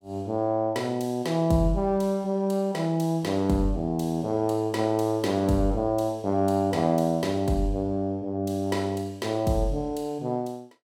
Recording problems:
none

